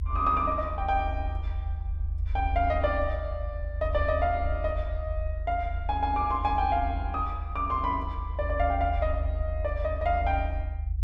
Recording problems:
rumble; below 78 Hz, strongest tone 50 Hz, SNR 3 dB

